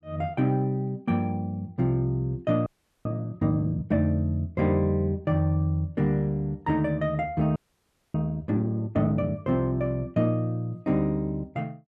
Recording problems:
frozen audio; at 2.5 s and at 7.5 s for 0.5 s

